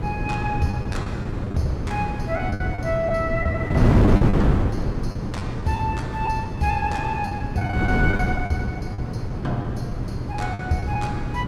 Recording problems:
electrical hum; 60 Hz, harmonics up to 720 Hz, SNR 9 dB
wind on the microphone; below 290 Hz, SNR -2 dB
lost packets; 9% of the sound replaced, filled with the last packet

